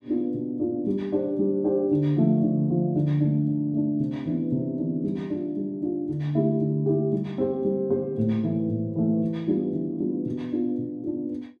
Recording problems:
none

